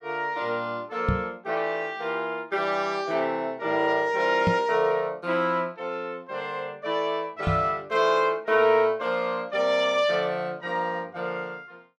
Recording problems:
microphone thump; at 1 s, at 4.5 s and at 7.5 s; peak +4 dB vs average level

